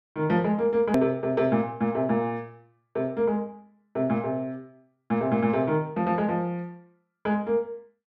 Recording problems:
hard cut with a click; at 1 s

